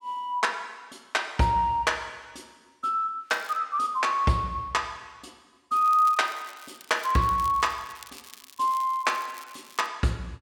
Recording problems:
crackle; at 3.5 s and from 6 to 10 s; loose cable, SNR 21 dB

